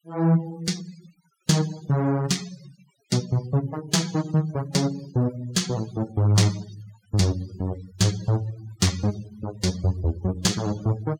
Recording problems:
noise reduction artefacts; signal-to-artefact ratio 18 dB

